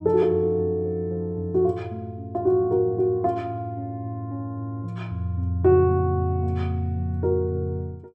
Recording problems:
none

